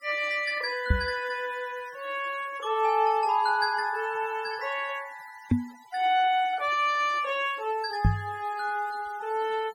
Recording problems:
noise reduction artefacts; signal-to-artefact ratio 21 dB
microphone thump; at 1 s, at 5.5 s and at 8 s; peak +8 dB vs average level

